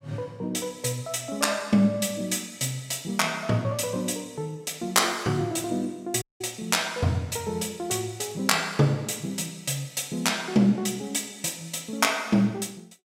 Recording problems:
dropout; at 6 s

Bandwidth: 16 kHz